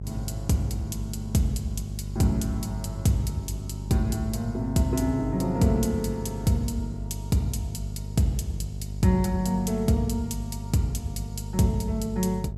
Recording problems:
mains hum; 50 Hz, harmonics up to 450 Hz, SNR 8 dB

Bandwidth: 14.5 kHz